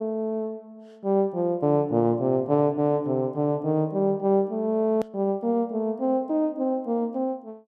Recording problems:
edit click; at 5 s

